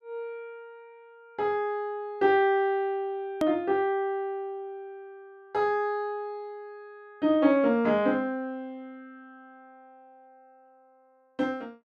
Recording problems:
hard cut with a click; at 3.5 s

